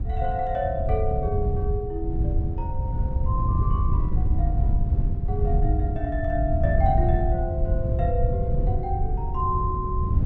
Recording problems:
wind on the microphone; below 100 Hz, SNR -4 dB

